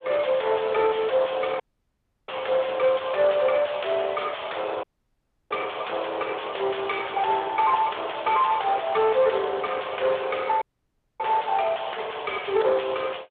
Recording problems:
phone line; 340 Hz to 3.6 kHz, Speex
distorted audio; soft clipping, signal-to-distortion ratio 6 dB
dropout; at 1.5 s for 0.5 s, at 5 s for 0.5 s and at 11 s for 0.5 s

